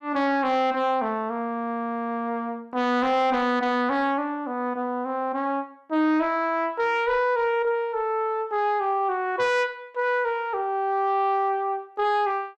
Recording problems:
distortion; soft clipping, signal-to-distortion ratio 11 dB

